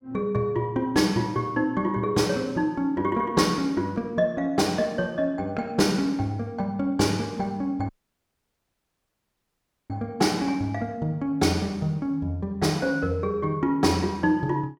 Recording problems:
audio cutting out; at 8 s for 2 s

